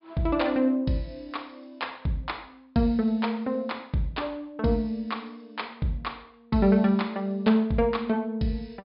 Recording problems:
treble missing; nothing above 5.5 kHz

